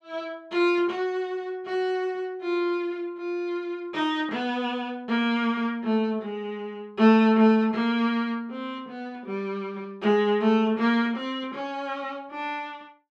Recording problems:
none

